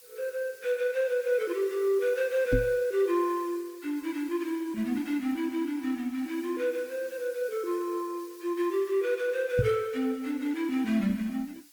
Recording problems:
lossy compression; Opus, log-spectral distance 3 dB, nothing above 20.1 kHz
hiss; slope +3 dB per octave, SNR 23 dB
microphone bump; at 2.5 s and at 9.5 s; peak +6 dB vs average level

